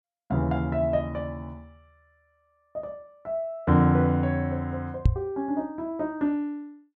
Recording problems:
microphone bump; at 5 s; peak +9 dB vs average level

